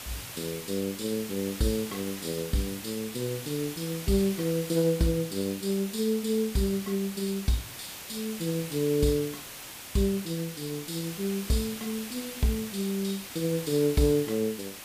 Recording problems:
hiss; slope -1 dB per octave, SNR 10 dB

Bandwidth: 15 kHz